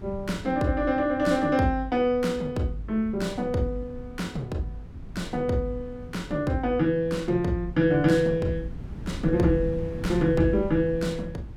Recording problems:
wind noise; below 160 Hz, SNR 14 dB

